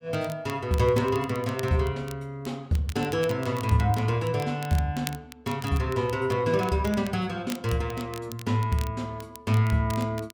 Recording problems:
crackling; vinyl, SNR 18 dB

